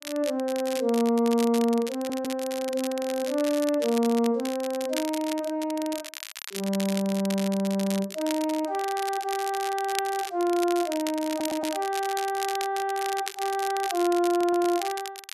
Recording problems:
crackling; vinyl, SNR 11 dB
stutter; at 2 s, at 11 s and at 14 s

